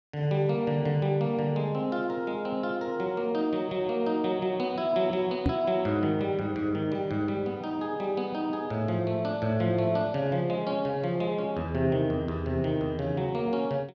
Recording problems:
microphone bump; at 5.5 s; peak +6 dB vs average level

